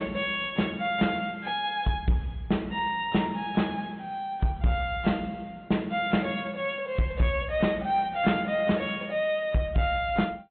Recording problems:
treble cut off; nothing above 3.5 kHz
codec artefacts; AAC, log-spectral distance 2 dB
distorted audio; soft clipping, signal-to-distortion ratio 11 dB

